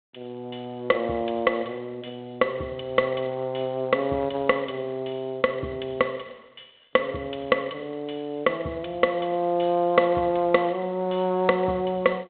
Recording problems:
phone line; 220 Hz to 3.9 kHz, G.726

